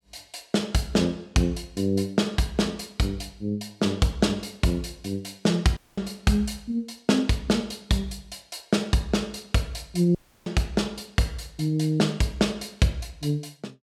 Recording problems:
dropout; at 6 s and at 10 s

